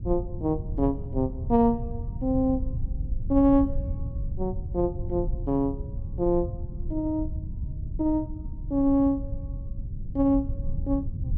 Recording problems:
rumble; below 100 Hz, SNR 8 dB

